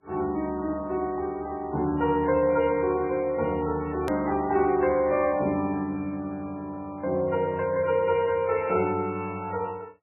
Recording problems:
codec artefacts; MP3, log-spectral distance 2 dB, nothing above 13.1 kHz
edit click; at 4 s

